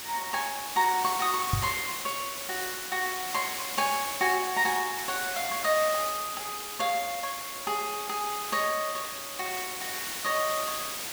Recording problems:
hiss; slope 0 dB per octave, SNR 4 dB
microphone bump; at 1.5 s; peak +5 dB vs average level

